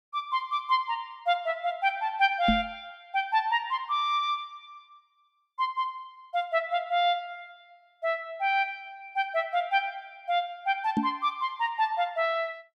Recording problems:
knock on the microphone; at 2.5 s and at 11 s; peak +6 dB vs average level

